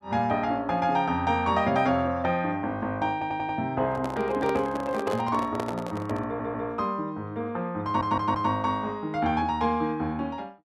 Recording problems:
audio stuttering; at 3 s, at 6.5 s and at 8 s
microphone handling noise; from 4 to 6.5 s; peak -3 dB vs average level

